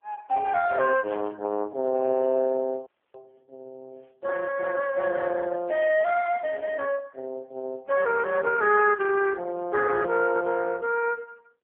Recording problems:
telephone audio; 220 Hz to 3.1 kHz, AMR-NB
static burst; at 1 s and at 6 s; peak -18 dB vs average level
dropout; at 3 s

